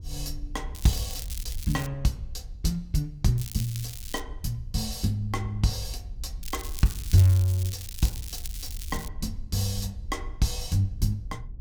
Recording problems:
wind noise; below 64 Hz, SNR 13 dB
crackling; from 1 to 2 s, at 3.5 s and from 6.5 to 9 s; loose cable, SNR 11 dB

